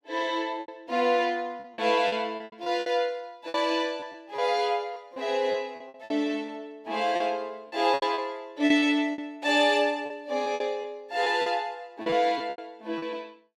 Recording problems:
packet loss; 11% of the sound replaced, filled with repeated pitch periods

